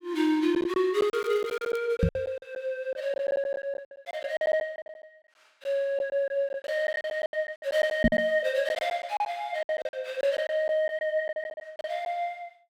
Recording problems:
packet loss; 14% of the sound replaced, filled with silence
crackling; at 1 s; loose cable, SNR 23 dB
microphone thump; at 2 s and at 8 s; peak +9 dB vs average level

